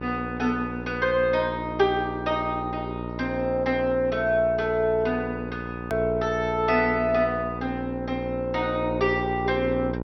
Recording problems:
low-pass filter; nothing above 5.8 kHz
hum; 60 Hz, harmonics up to 1.4 kHz, SNR 8 dB
edit click; at 6 s

